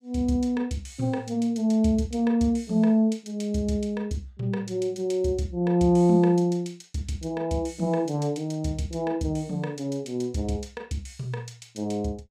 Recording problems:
none

